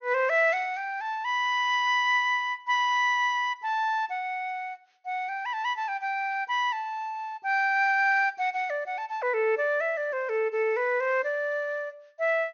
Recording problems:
treble cut off; nothing above 6.6 kHz

